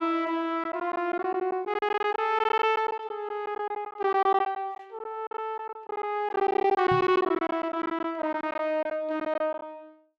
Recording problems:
packet loss; 12% of the sound replaced, filled with silence
microphone bump; at 7 s; peak -2 dB vs average level

